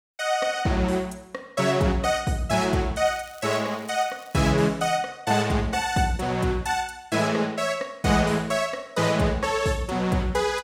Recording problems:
crackle; from 3 to 4.5 s; loose cable, SNR 26 dB

